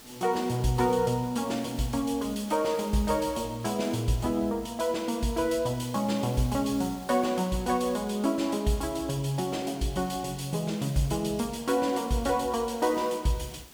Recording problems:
hiss; SNR 20 dB

